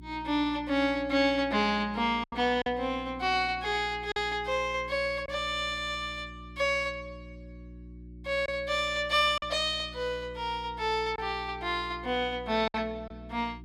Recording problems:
hum; 60 Hz, harmonics up to 360 Hz, SNR 18 dB
lost packets; 3% of the sound replaced, filled with silence

